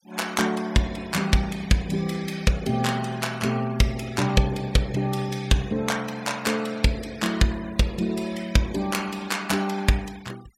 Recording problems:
noise reduction artefacts; signal-to-artefact ratio 20 dB

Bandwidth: 16 kHz